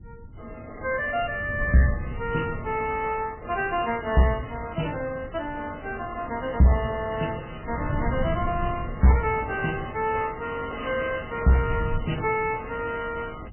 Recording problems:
lossy codec; AAC, then MP3, log-spectral distance 4 dB, nothing above 3 kHz
distortion; hard clipping, uneven, signal-to-distortion ratio 10 dB
wind noise; below 140 Hz, SNR 11 dB

